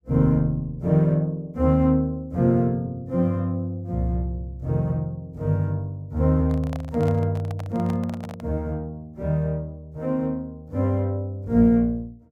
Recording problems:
microphone handling noise; from 6.5 to 8.5 s; peak -9 dB vs average level

